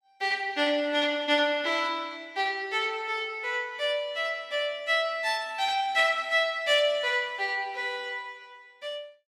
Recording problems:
none

